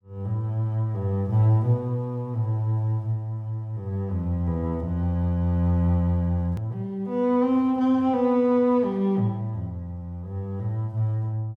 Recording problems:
click at an edit; at 6.5 s

